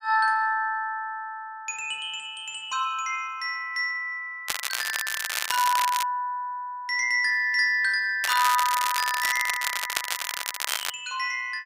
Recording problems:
crackle; from 4.5 to 6 s and from 8 to 11 s; loose cable, SNR 3 dB

